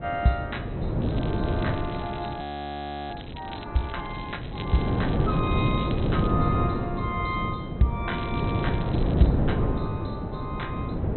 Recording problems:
treble missing; nothing above 4.1 kHz
wind on the microphone; below 330 Hz, SNR -3 dB
crackling; from 1 to 3.5 s, from 4 to 6.5 s and from 8 to 9.5 s; loose cable, SNR 14 dB
audio freezing; at 2.5 s for 0.5 s

